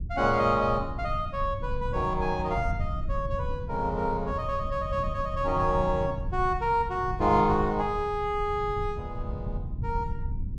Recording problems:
rumble; below 110 Hz, SNR 8 dB

